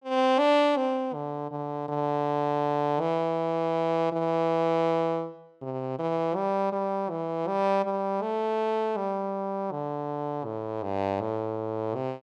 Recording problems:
none

